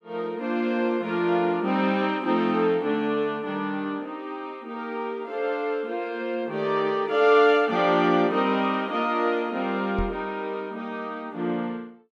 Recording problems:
microphone thump; at 10 s; peak -3 dB vs average level

